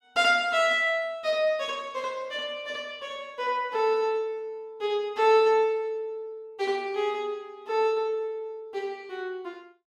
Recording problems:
none

